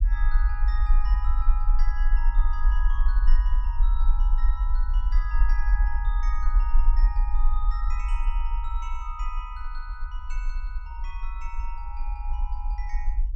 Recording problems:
rumble; below 42 Hz, strongest tone 24 Hz, SNR -12 dB

